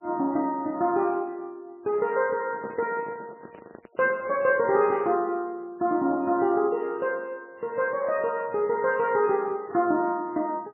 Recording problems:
lossy compression; MP3, log-spectral distance 2 dB, nothing above 2.7 kHz
microphone handling noise; from 2.5 to 4.5 s; peak -6 dB vs average level

